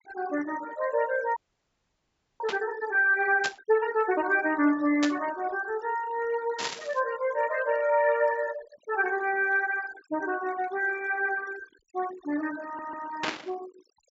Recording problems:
low-pass filter; nothing above 8 kHz
noise reduction artefacts; signal-to-artefact ratio 17 dB
frozen audio; at 1.5 s for 1 s
static burst; 5 times, first at 2.5 s; peak +2 dB vs average level
audio stuttering; at 13 s

